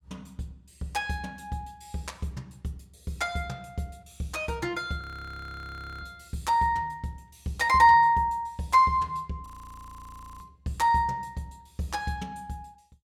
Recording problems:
audio freezing; at 5 s for 1 s and at 9.5 s for 1 s

